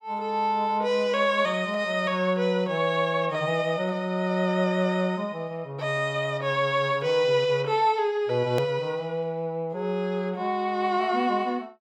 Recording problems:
edit click; at 8.5 s

